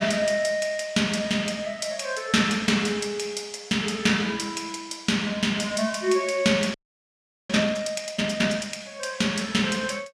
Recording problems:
frozen audio; at 6.5 s for 1 s

